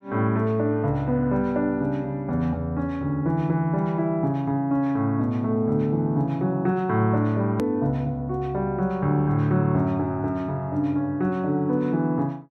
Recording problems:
click at an edit; at 7.5 s

